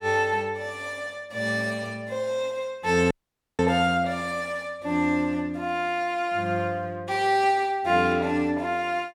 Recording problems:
audio cutting out; at 3 s

